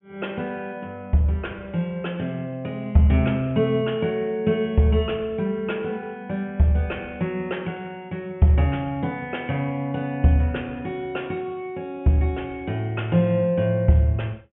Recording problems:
treble cut off; nothing above 3.2 kHz

